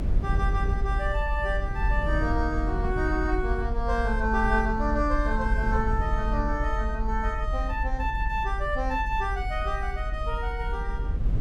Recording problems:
low-frequency rumble; below 56 Hz, strongest tone 42 Hz, SNR 2 dB
wind on the microphone; below 130 Hz, SNR 7 dB

